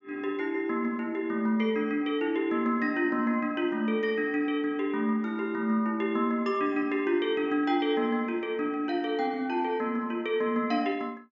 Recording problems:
treble cut off; nothing above 7.1 kHz

